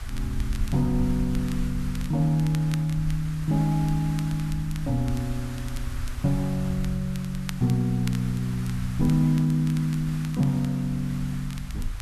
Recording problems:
background hiss; SNR 18 dB
rumble; below 72 Hz, SNR 11 dB
crackling; vinyl, SNR 21 dB

